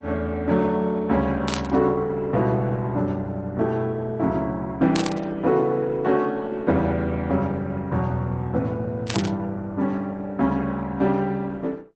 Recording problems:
lossy codec; MP3, then Opus, log-spectral distance 2 dB
burst of static; at 1.5 s, at 5 s and at 9 s; peak +1 dB vs average level

